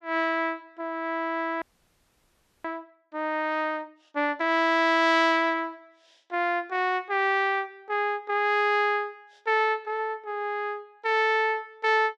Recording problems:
frozen audio; at 1.5 s for 1 s

